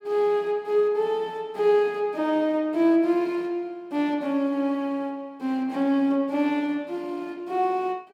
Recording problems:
none

